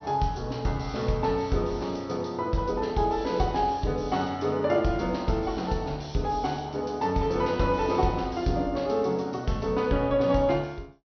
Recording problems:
treble cut off; nothing above 6.1 kHz

